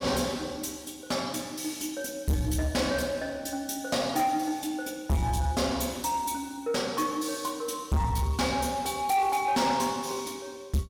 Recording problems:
distortion; soft clipping, signal-to-distortion ratio 7 dB

